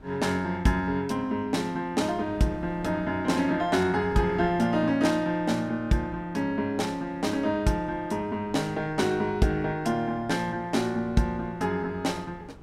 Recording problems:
wind noise; below 460 Hz, SNR 21 dB

